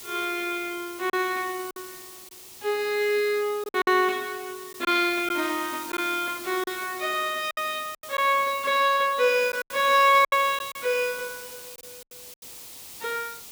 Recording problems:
background hiss; SNR 15 dB
lost packets; 6% of the sound replaced, filled with silence

